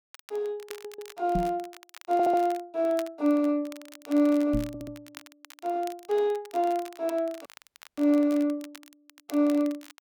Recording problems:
crackle; vinyl, SNR 22 dB
stutter; at 0.5 s, at 2 s and at 4.5 s
microphone thump; at 1.5 s and at 4.5 s; peak 0 dB vs average level
dropout; at 7.5 s for 0.5 s

